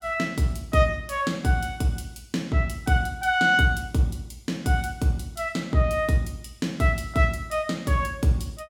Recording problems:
none

